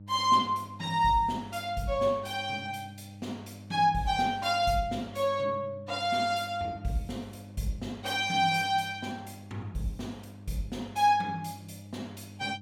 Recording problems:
electrical hum; 50 Hz, harmonics up to 600 Hz, SNR 18 dB

